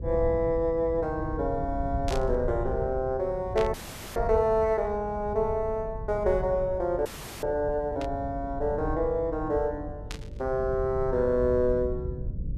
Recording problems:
hum; 50 Hz, harmonics up to 550 Hz, SNR 18 dB
low-frequency rumble; below 110 Hz, SNR 10 dB
burst of static; 4 times, first at 2 s; peak -5 dB vs average level
frozen audio; at 3.5 s and at 7 s

